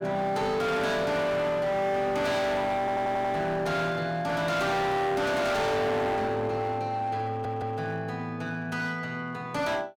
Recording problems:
distorted audio; hard clipping, uneven, signal-to-distortion ratio 6 dB
audio stuttering; at 3 s and at 7.5 s

